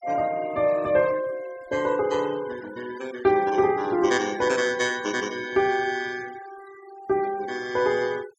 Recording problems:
noise reduction artefacts; signal-to-artefact ratio 20 dB

